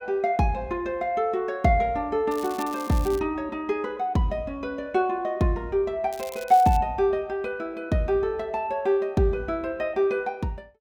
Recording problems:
crackling; at 2.5 s and at 6 s; loose cable, SNR 18 dB

